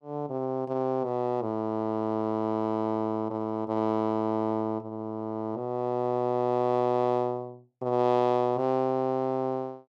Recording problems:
none

